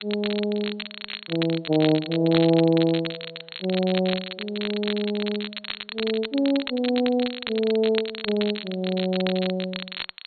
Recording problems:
low-pass filter; nothing above 4.3 kHz
hiss; SNR 42 dB
crackle; vinyl, SNR 9 dB

